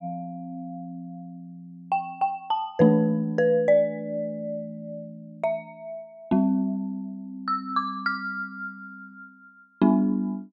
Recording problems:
none

